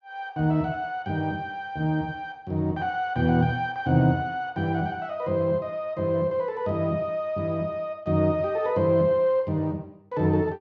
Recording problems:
none

